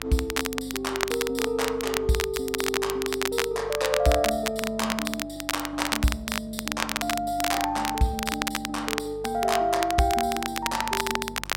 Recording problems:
mains hum; 50 Hz, harmonics up to 700 Hz, SNR 19 dB
crackle; vinyl, SNR 3 dB

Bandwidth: 16 kHz